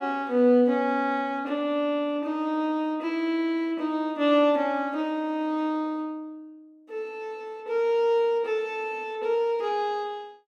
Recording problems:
none

